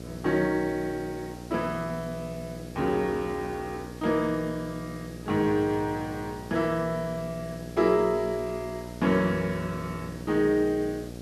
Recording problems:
electrical hum; 60 Hz, harmonics up to 780 Hz, SNR 13 dB
background hiss; SNR 21 dB

